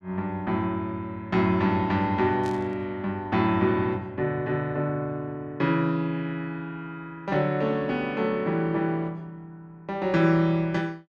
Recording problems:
static burst; at 2.5 s; peak -13 dB vs average level

